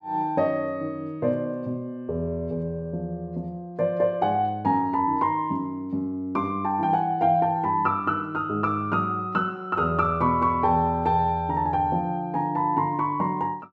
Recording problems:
none

